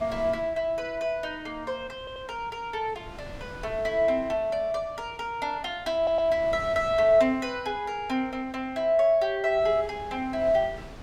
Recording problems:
wind on the microphone; below 690 Hz, SNR 20 dB
audio stuttering; at 2 s and at 6 s

